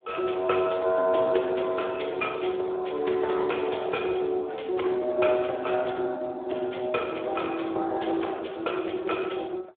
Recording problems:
phone line; 300 Hz to 3.6 kHz, Speex

